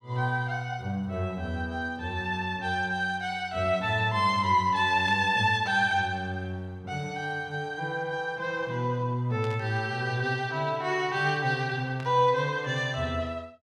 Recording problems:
static burst; at 5 s, at 9.5 s and at 12 s; peak -13 dB vs average level

